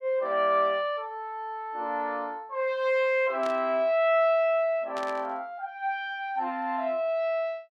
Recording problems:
static burst; at 3.5 s and at 5 s; peak -10 dB vs average level

